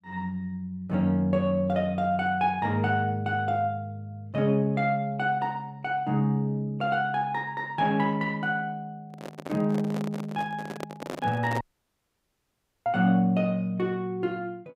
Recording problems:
microphone handling noise; from 9 to 12 s; peak -2 dB vs average level
audio cutting out; at 12 s for 1.5 s

